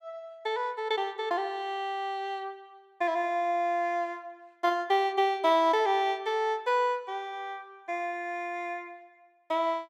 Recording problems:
none

